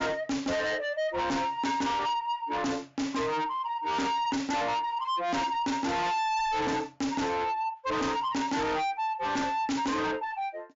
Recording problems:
low-pass filter; nothing above 7.4 kHz
distortion; soft clipping, signal-to-distortion ratio 6 dB

